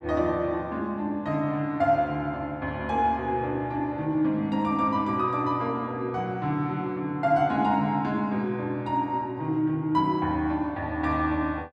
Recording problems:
none

